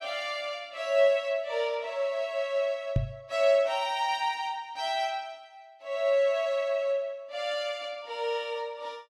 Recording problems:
microphone thump; at 3 s; peak +6 dB vs average level

